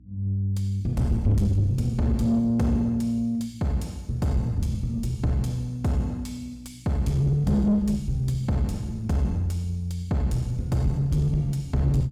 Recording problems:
distortion; soft clipping, signal-to-distortion ratio 10 dB
electrical hum; 60 Hz, harmonics up to 300 Hz, SNR 27 dB

